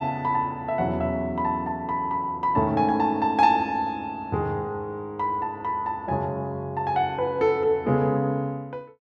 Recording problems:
none

